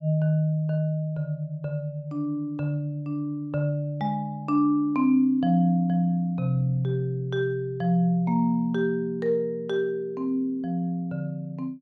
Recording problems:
none

